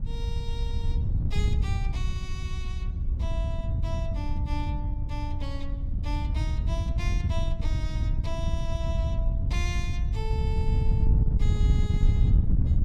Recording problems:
wind noise; below 98 Hz, SNR -12 dB

